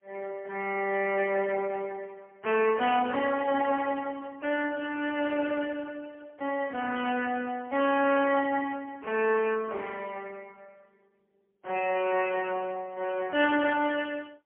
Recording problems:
phone line; 220 Hz to 3.2 kHz, AMR-NB, then MP3

